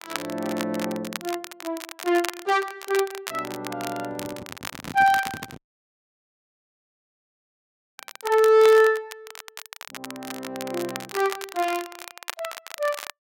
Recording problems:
crackling; vinyl, SNR 13 dB
microphone handling noise; from 4 to 5.5 s; peak -9 dB vs average level
dropout; at 5.5 s for 2.5 s

